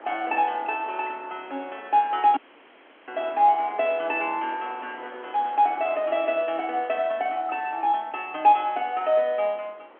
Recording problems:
telephone audio; 240 Hz to 3.3 kHz, G.711
wind noise; below 1.5 kHz, SNR 21 dB
dropout; at 2.5 s for 0.5 s

